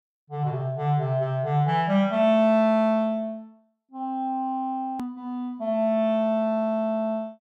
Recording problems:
click at an edit; at 5 s

